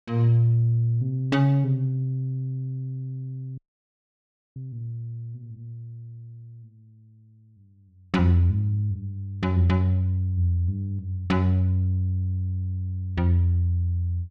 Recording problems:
frozen audio; at 3.5 s for 1 s

